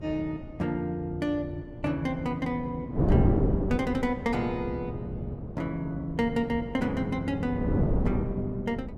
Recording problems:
electrical hum; 60 Hz, harmonics up to 540 Hz, SNR 20 dB
wind noise; below 300 Hz, SNR 1 dB

